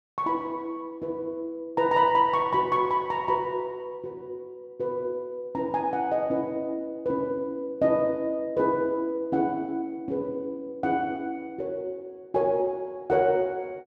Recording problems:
none

